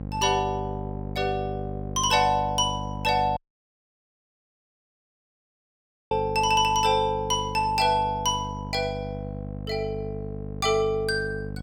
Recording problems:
hum; 50 Hz, harmonics up to 800 Hz, SNR 10 dB
dropout; at 3.5 s for 2.5 s

